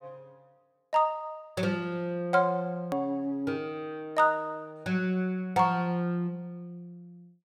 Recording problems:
edit click; at 3 s

